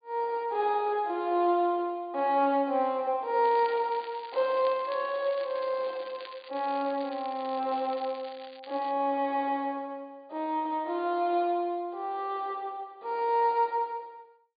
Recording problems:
low-pass filter; nothing above 4.7 kHz
crackle; from 3.5 to 9 s; loose cable, SNR 20 dB

